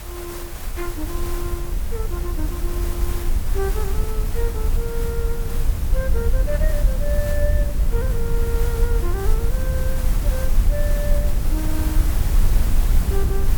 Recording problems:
background hiss; slope -3 dB per octave, SNR 3 dB
rumble; below 60 Hz, SNR -8 dB

